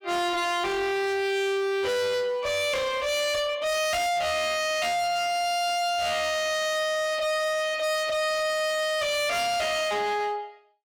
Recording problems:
distortion; hard clipping, signal-to-distortion ratio 7 dB

